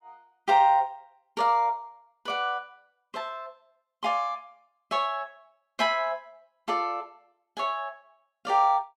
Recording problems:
none

